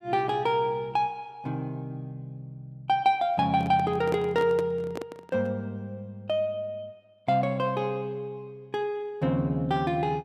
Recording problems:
microphone handling noise; from 3.5 to 5.5 s; peak -2 dB vs average level

